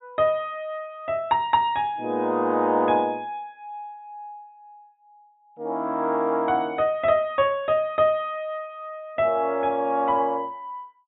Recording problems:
treble cut off; nothing above 4 kHz

